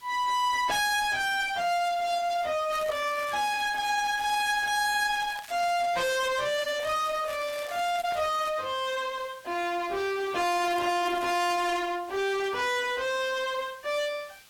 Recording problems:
lossy compression; AAC, then AAC, log-spectral distance 3 dB, nothing above 14.3 kHz
distortion; soft clipping, signal-to-distortion ratio 6 dB
hiss; slope +1 dB per octave, SNR 25 dB
crackle; from 2.5 to 5.5 s, from 6.5 to 8.5 s and from 11 to 12 s; loose cable, SNR 18 dB

